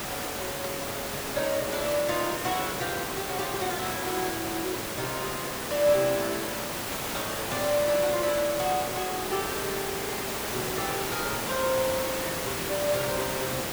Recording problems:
background hiss; slope -3 dB per octave, SNR 1 dB

